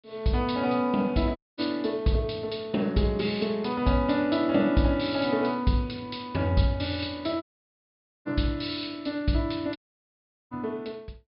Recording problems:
low-pass filter; nothing above 5.5 kHz
audio cutting out; at 1.5 s, at 7.5 s for 1 s and at 10 s for 1 s

